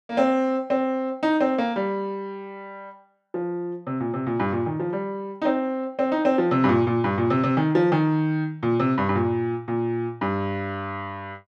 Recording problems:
none

